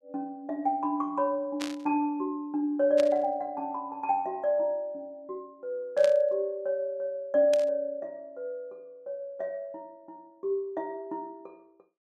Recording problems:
burst of static; 4 times, first at 1.5 s; peak -3 dB vs average level

